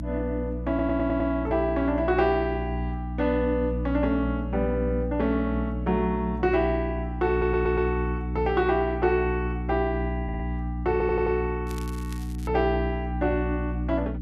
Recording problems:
hum; 60 Hz, harmonics up to 300 Hz, SNR 5 dB
stutter; 4 times, first at 0.5 s
crackling; at 12 s; loose cable, SNR 20 dB

